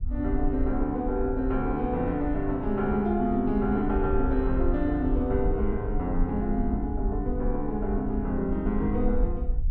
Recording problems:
rumble; below 56 Hz, SNR 6 dB

